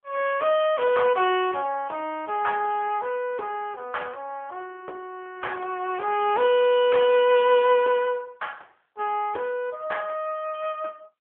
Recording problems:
phone line; 320 Hz to 3.3 kHz, AMR-NB

